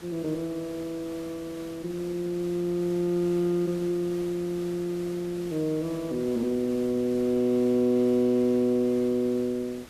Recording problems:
background hiss; slope -4 dB per octave, SNR 18 dB

